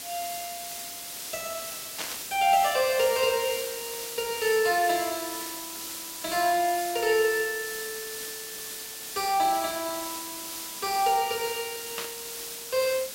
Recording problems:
hiss; slope +1 dB per octave, SNR 7 dB
burst of static; at 2 s and at 12 s; peak -2 dB vs average level

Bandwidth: 16 kHz